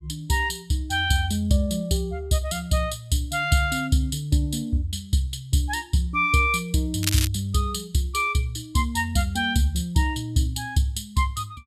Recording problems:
crackling; at 7 s; loose cable, SNR 4 dB

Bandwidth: 14 kHz